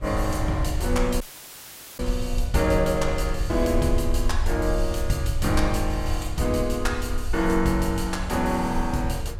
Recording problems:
low-frequency rumble; below 66 Hz, SNR 5 dB
wind noise; below 430 Hz, SNR 17 dB
audio cutting out; at 1 s for 1 s

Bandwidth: 16 kHz